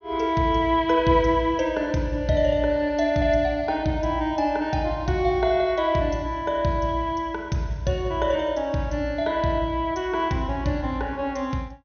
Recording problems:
treble missing; nothing above 6.4 kHz

